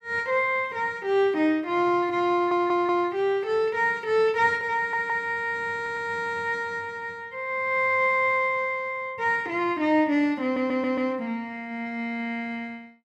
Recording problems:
audio stuttering; 4 times, first at 2.5 s

